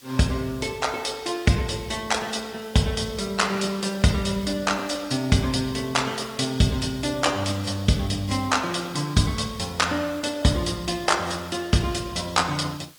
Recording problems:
codec artefacts; AAC, log-spectral distance 4 dB
background hiss; slope +1 dB per octave, SNR 23 dB

